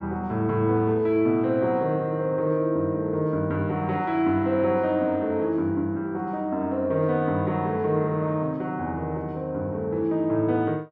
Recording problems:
none

